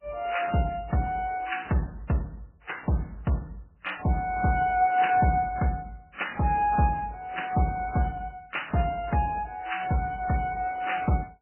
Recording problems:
lossy codec; MP3, then AAC, log-spectral distance 4 dB, nothing above 2.9 kHz

